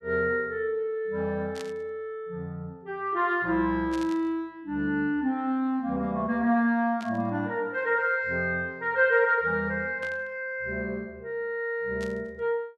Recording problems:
burst of static; 5 times, first at 1.5 s; peak -9 dB vs average level

